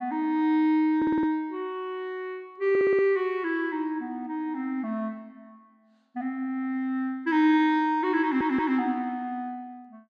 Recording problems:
audio stuttering; at 1 s, at 2.5 s and at 8 s

